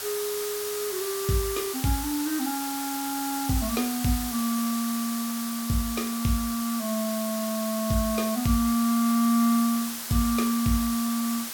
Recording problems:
background hiss; slope +1 dB per octave, SNR 5 dB

